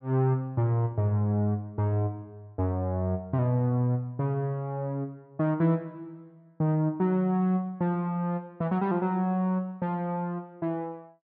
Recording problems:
low-pass filter; nothing above 5.5 kHz

